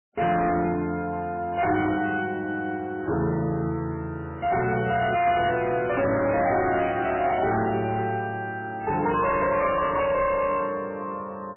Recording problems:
lossy compression; MP3, log-spectral distance 4 dB, nothing above 2.4 kHz
distortion; hard clipping, signal-to-distortion ratio 8 dB

